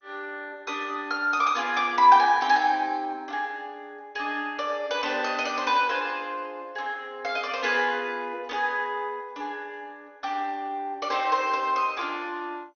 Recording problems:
lossy compression; MP2, log-spectral distance 3 dB, nothing above 6.3 kHz

